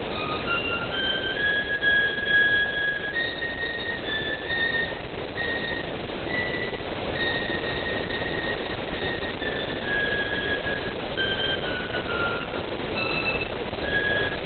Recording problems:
codec artefacts; Opus, log-spectral distance 17 dB, nothing above 3.8 kHz
hiss; SNR 4 dB

